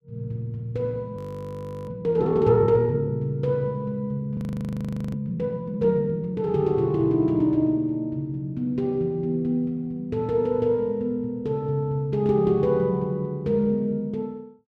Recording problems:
frozen audio; at 1 s for 0.5 s and at 4.5 s for 1 s

